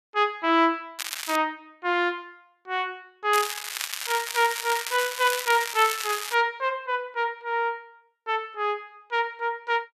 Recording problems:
crackling; at 1 s and from 3.5 to 6.5 s; loose cable, SNR 5 dB

